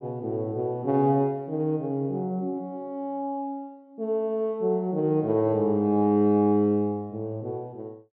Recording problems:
none

